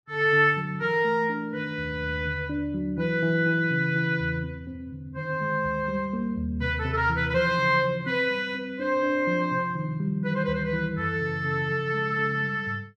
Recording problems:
none

